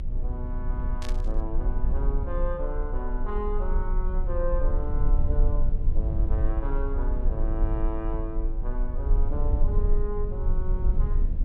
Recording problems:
low-frequency rumble; below 48 Hz, strongest tone 28 Hz, SNR -7 dB
static burst; at 1 s; peak -1 dB vs average level

